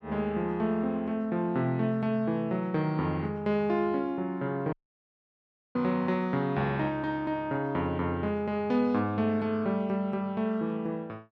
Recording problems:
dropout; at 4.5 s for 1 s

